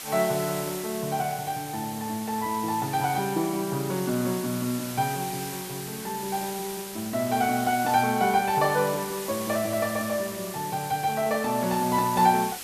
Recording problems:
background hiss; slope 0 dB per octave, SNR 9 dB

